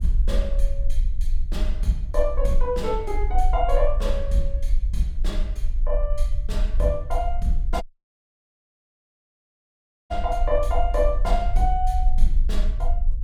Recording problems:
low-frequency rumble; below 44 Hz, strongest tone 22 Hz, SNR -1 dB
dropout; at 8 s for 2.5 s

